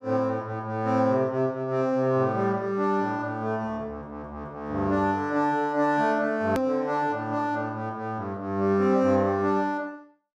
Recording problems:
hard cut with a click; at 6.5 s

